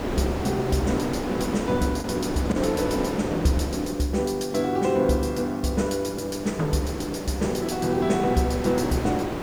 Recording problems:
background hiss; slope -1 dB per octave, SNR 26 dB
wind on the microphone; below 740 Hz, SNR 6 dB
lost packets; 0.9% of the sound replaced, filled with the last packet

